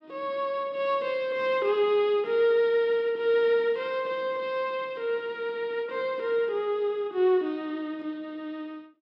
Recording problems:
none

